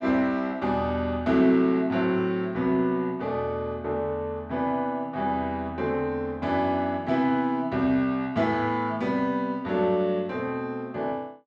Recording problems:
none

